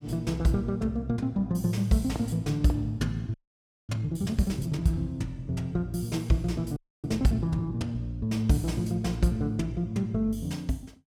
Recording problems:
audio freezing; at 3.5 s for 0.5 s and at 7 s

